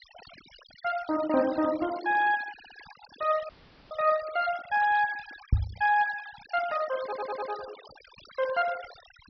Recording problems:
treble cut off; nothing above 5.5 kHz
denoising artefacts; signal-to-artefact ratio 17 dB
stutter; at 2.5 s and at 7 s
dropout; at 3.5 s
microphone thump; at 5.5 s; peak +7 dB vs average level

